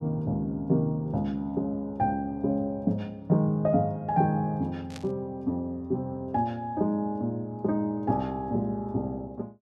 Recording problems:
burst of static; at 5 s; peak -10 dB vs average level

